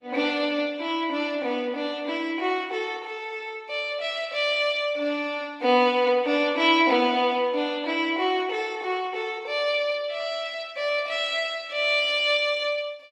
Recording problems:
lossy compression; Opus, log-spectral distance 3 dB

